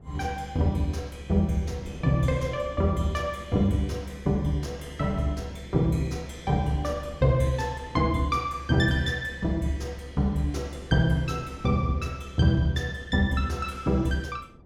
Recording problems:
wind on the microphone; below 310 Hz, SNR 21 dB

